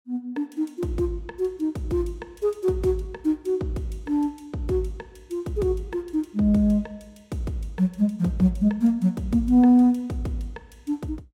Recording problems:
none

